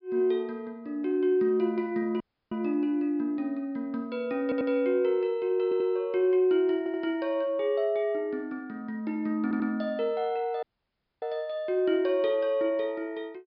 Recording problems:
treble missing; nothing above 5.5 kHz
audio cutting out; at 2 s and at 11 s for 0.5 s
stutter; 4 times, first at 4.5 s

